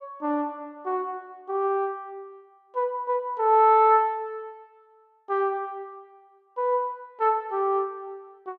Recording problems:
none

